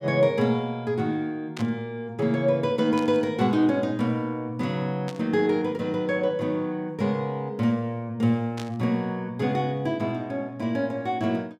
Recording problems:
burst of static; 4 times, first at 1.5 s; peak -7 dB vs average level

